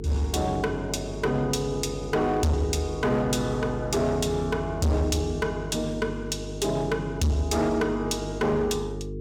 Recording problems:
distortion; hard clipping, uneven, signal-to-distortion ratio 6 dB
electrical hum; 50 Hz, harmonics up to 450 Hz, SNR 9 dB

